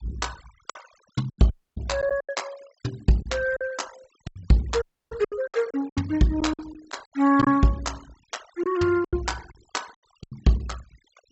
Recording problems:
treble missing; nothing above 7.8 kHz
denoising artefacts; signal-to-artefact ratio 21 dB
packet loss; 11% of the sound replaced, filled with silence
audio cutting out; at 1.5 s and at 5 s

